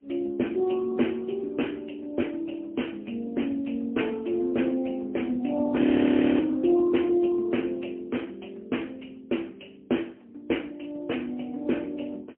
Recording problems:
telephone audio; 220 Hz to 3.2 kHz, AMR-NB, then MP3
frozen audio; at 6 s for 0.5 s

